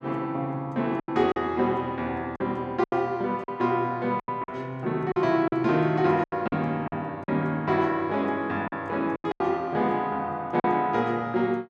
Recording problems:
packet loss; 8% of the sound replaced, filled with silence

